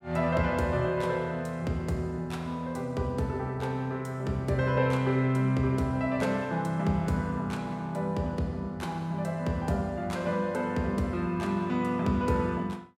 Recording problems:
none

